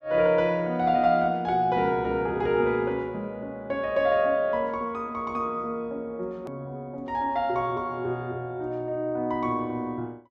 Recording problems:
hard cut with a click; at 6.5 s

